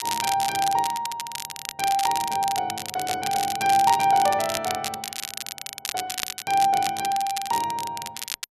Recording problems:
crackle; vinyl, SNR 7 dB

